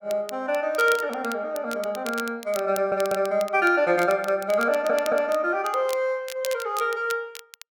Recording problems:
crackle; vinyl, SNR 16 dB
audio stuttering; at 2.5 s and at 4.5 s

